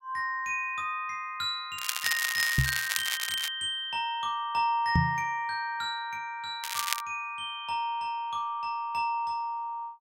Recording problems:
crackling; from 2 to 3.5 s and at 6.5 s; loose cable, SNR 1 dB
microphone thump; at 2.5 s and at 5 s; peak +9 dB vs average level

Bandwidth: 16 kHz